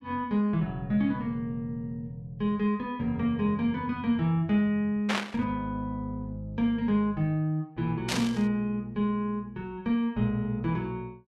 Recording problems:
static burst; at 5 s and at 8 s; peak +3 dB vs average level

